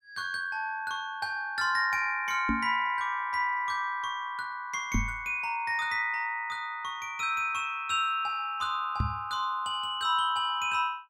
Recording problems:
microphone bump; at 2.5 s, at 5 s and at 9 s; peak +3 dB vs average level

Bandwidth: 16 kHz